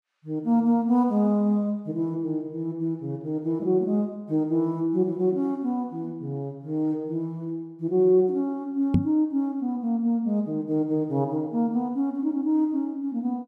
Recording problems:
microphone thump; at 9 s; peak +9 dB vs average level

